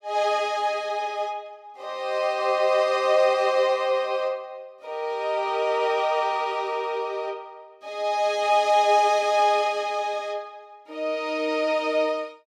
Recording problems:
none

